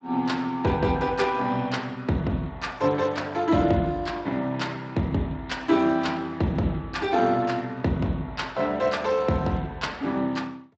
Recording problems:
lossy compression; Speex, log-spectral distance 3 dB, nothing above 7.3 kHz

